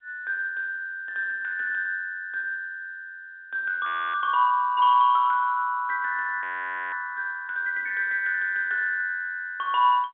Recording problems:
phone line; 130 Hz to 3.7 kHz, G.711
audio freezing; at 4 s and at 6.5 s for 0.5 s

